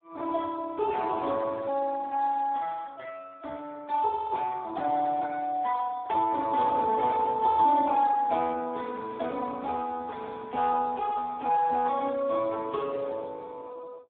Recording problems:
telephone audio; 260 Hz to 2 kHz, Speex

